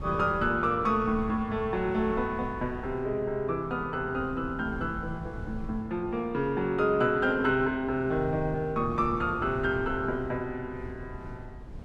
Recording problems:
wind noise; below 150 Hz, SNR 14 dB

